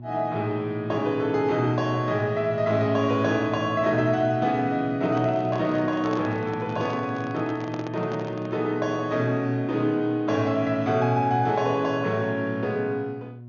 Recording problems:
treble cut off; nothing above 6.7 kHz
hum; 60 Hz, harmonics up to 720 Hz, SNR 15 dB
microphone handling noise; from 5 to 8.5 s; peak -5 dB vs average level

